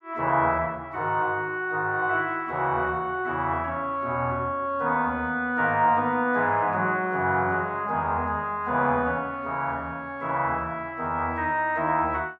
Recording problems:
none

